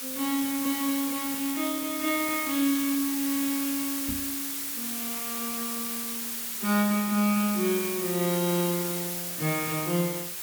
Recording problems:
hiss; slope +1 dB per octave, SNR 2 dB
crackle; from 1.5 to 3.5 s; loose cable, SNR 22 dB
microphone thump; at 4 s; peak -4 dB vs average level

